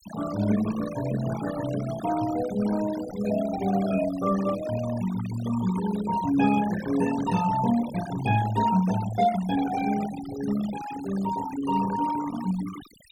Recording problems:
noise reduction artefacts; signal-to-artefact ratio 13 dB

